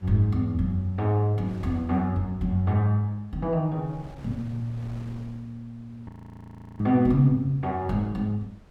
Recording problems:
wind noise; below 390 Hz, SNR 24 dB
audio freezing; at 6 s for 0.5 s

